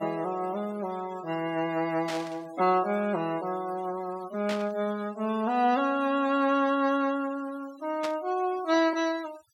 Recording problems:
noise reduction artefacts; signal-to-artefact ratio 19 dB
burst of static; at 2 s, at 4.5 s and at 8 s; peak -4 dB vs average level

